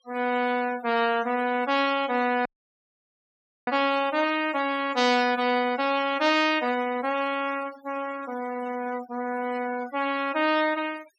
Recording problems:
noise reduction artefacts; signal-to-artefact ratio 16 dB
dropout; at 2.5 s for 1 s

